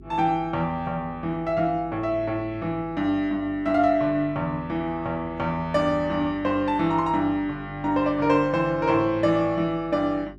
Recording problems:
hum; 50 Hz, harmonics up to 400 Hz, SNR 21 dB

